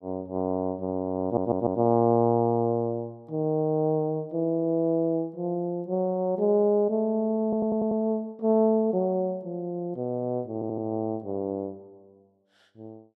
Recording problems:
audio stuttering; at 1 s, at 7.5 s and at 11 s

